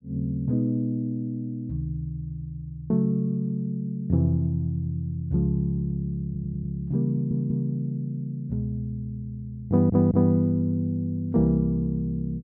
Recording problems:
stutter; at 6.5 s, at 7 s and at 9.5 s

